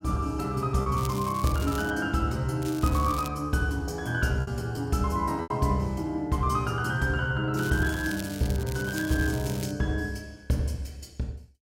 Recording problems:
lost packets; 1.8% of the sound replaced, filled with repeated pitch periods
crackle; at 1 s, at 2.5 s and from 7.5 to 9.5 s; loose cable, SNR 14 dB

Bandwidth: 16 kHz